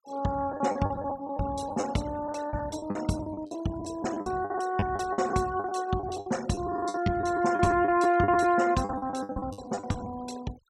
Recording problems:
noise reduction artefacts; signal-to-artefact ratio 18 dB
packet loss; 16% of the sound replaced, filled with the last packet

